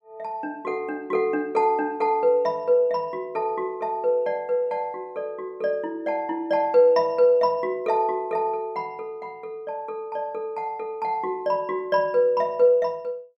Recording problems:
none

